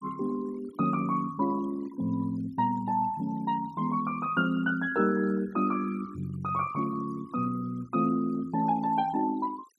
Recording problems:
denoising artefacts; signal-to-artefact ratio 21 dB

